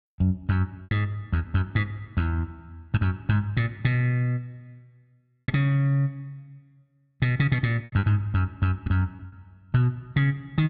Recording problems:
packet loss; 4% of the sound replaced, filled with repeated pitch periods

